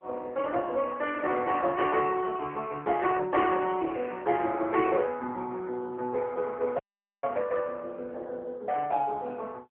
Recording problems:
phone line; 300 Hz to 3.4 kHz, AMR-NB
audio cutting out; at 7 s

